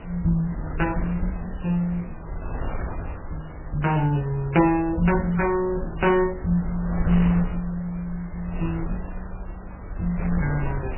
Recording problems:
lossy compression; MP3, log-spectral distance 4 dB, nothing above 2.7 kHz
wind on the microphone; below 150 Hz, SNR 10 dB
crackling; from 4 to 6.5 s and at 6.5 s; loose cable, SNR 27 dB

